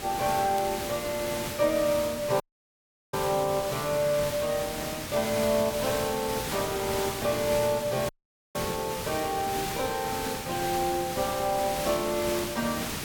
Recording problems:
hum; 60 Hz, harmonics up to 2.5 kHz, SNR 26 dB
background hiss; slope -2 dB per octave, SNR 5 dB
crackling; vinyl, SNR 30 dB
dropout; at 2.5 s for 0.5 s and at 8 s

